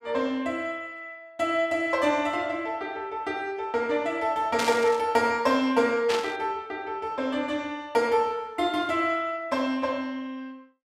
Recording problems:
static burst; at 4.5 s and at 6 s; peak 0 dB vs average level

